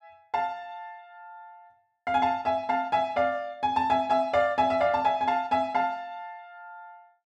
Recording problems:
none

